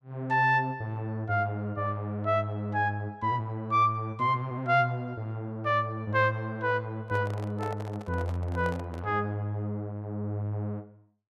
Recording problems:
microphone handling noise; from 7 to 9 s; peak -7 dB vs average level

